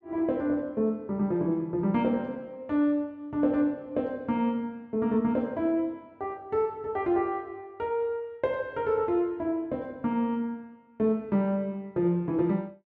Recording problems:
none

